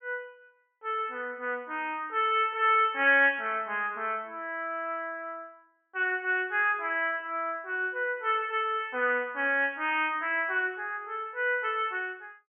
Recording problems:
low-pass filter; nothing above 3.2 kHz

